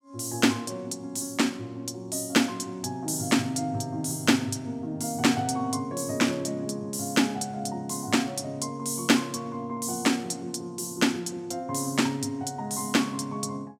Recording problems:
none

